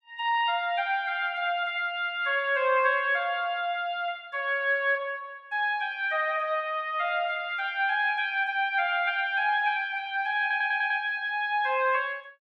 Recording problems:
stutter; at 10 s

